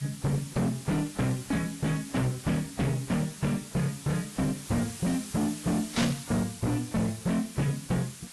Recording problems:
codec artefacts; AAC, log-spectral distance 12 dB
distortion; soft clipping, signal-to-distortion ratio 6 dB
hiss; slope +2 dB per octave, SNR 13 dB
static burst; at 6 s; peak +2 dB vs average level

